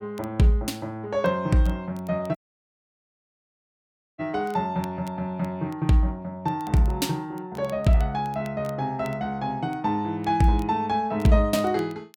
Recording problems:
crackling; vinyl, SNR 28 dB
audio cutting out; at 2.5 s for 2 s

